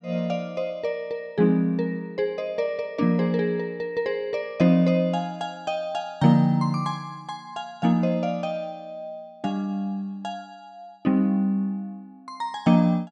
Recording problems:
none

